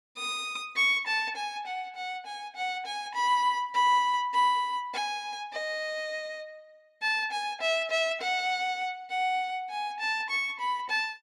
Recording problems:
none

